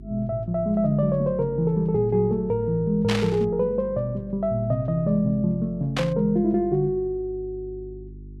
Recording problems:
electrical hum; 50 Hz, harmonics up to 400 Hz, SNR 18 dB
static burst; at 3 s and at 6 s; peak 0 dB vs average level

